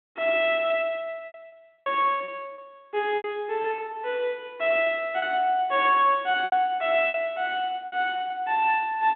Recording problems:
telephone audio; 240 Hz to 3.7 kHz, G.726
lost packets; 9% of the sound replaced, filled with repeated pitch periods

